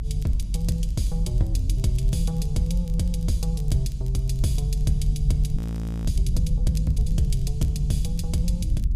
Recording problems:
rumble; below 64 Hz, strongest tone 46 Hz, SNR -1 dB
crackling; vinyl, SNR 27 dB
audio freezing; at 5.5 s

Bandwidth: 14.5 kHz